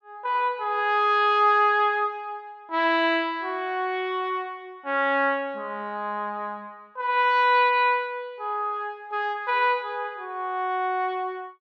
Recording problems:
none

